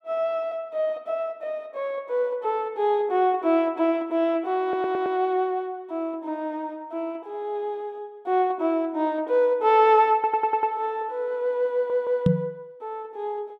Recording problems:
stutter; at 4.5 s, at 10 s and at 12 s
microphone thump; at 12 s; peak +8 dB vs average level

